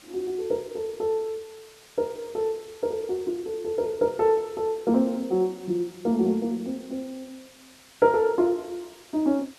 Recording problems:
hiss; slope 0 dB per octave, SNR 24 dB

